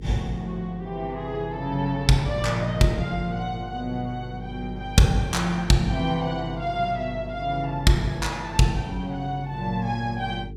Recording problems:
hum; 50 Hz, harmonics up to 450 Hz, SNR 13 dB

